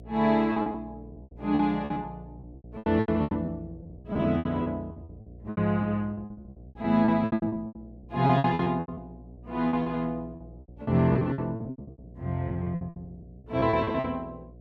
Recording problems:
hum; 60 Hz, harmonics up to 720 Hz, SNR 20 dB
packet loss; 20% of the sound replaced, filled with repeated pitch periods

